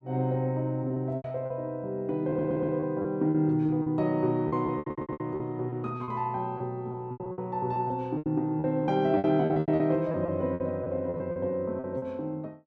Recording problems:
packet loss; 13% of the sound replaced, filled with repeated pitch periods
stutter; at 2.5 s and at 5 s

